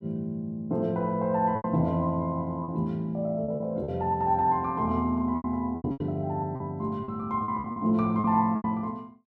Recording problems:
lost packets; 9% of the sound replaced, filled with repeated pitch periods

